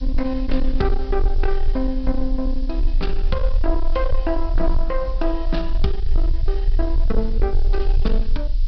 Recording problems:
treble cut off; nothing above 5.5 kHz
distorted audio; soft clipping, signal-to-distortion ratio 11 dB
background hiss; SNR 23 dB
rumble; below 38 Hz, strongest tone 22 Hz, SNR -2 dB

